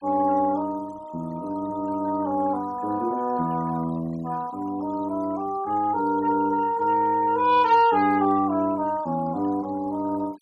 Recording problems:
denoising artefacts; signal-to-artefact ratio 22 dB

